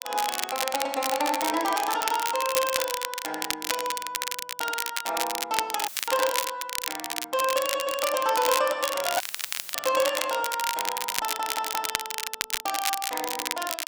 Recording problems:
crackling; vinyl, SNR 2 dB
audio cutting out; at 6 s and at 9 s for 0.5 s; filled with static
audio stuttering; at 7.5 s and at 11 s

